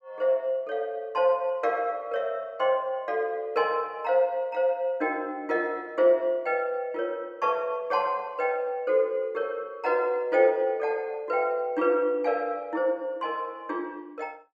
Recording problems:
none

